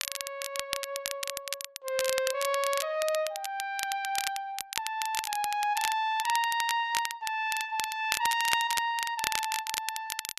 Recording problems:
crackling; vinyl, SNR 4 dB

